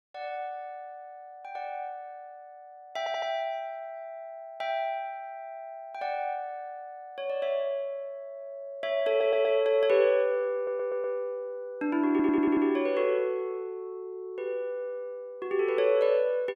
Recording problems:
stutter; 4 times, first at 3 s

